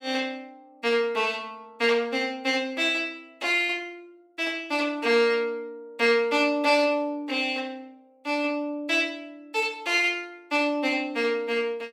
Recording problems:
none

